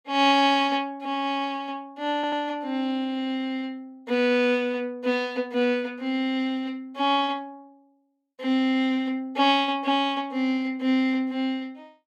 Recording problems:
stutter; at 2 s

